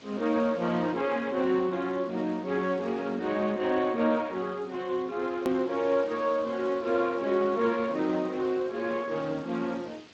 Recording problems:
lossy compression; Speex, log-spectral distance 4 dB, nothing above 17.7 kHz
hiss; SNR 24 dB
click at an edit; at 5.5 s

